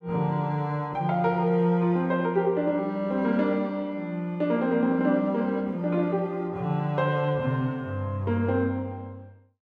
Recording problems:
none

